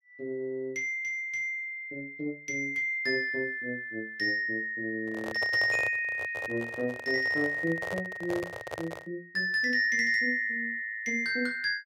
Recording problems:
microphone handling noise; from 5 to 9 s; peak -4 dB vs average level

